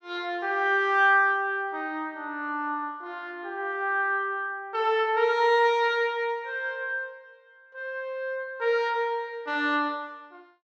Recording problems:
none

